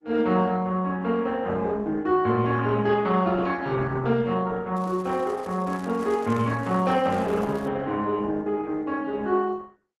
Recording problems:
lossy codec; Opus, log-spectral distance 3 dB
crackle; from 5 to 7.5 s; loose cable, SNR 25 dB

